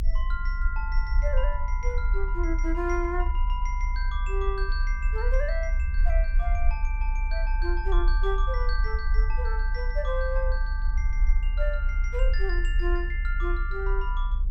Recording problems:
electrical hum; 50 Hz, harmonics up to 650 Hz, SNR 16 dB
rumble; below 48 Hz, strongest tone 34 Hz, SNR -5 dB

